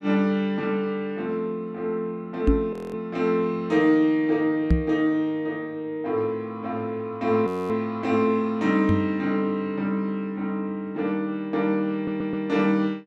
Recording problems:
microphone thump; at 2.5 s, at 4.5 s and at 9 s; peak +8 dB vs average level
frozen audio; at 2.5 s and at 7.5 s
audio stuttering; at 12 s

